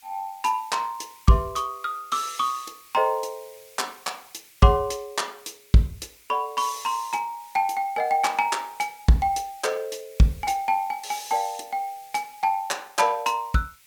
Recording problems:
background hiss; SNR 24 dB

